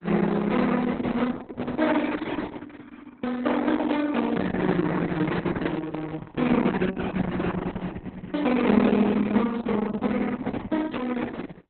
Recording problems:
lossy compression; Opus, then Opus, log-spectral distance 5 dB, nothing above 4 kHz

